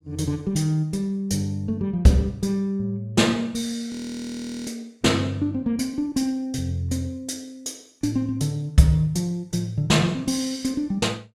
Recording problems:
audio freezing; at 4 s for 1 s

